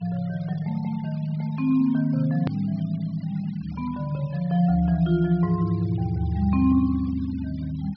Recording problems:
low-pass filter; nothing above 5.5 kHz
noise reduction artefacts; signal-to-artefact ratio 27 dB
click at an edit; at 2.5 s

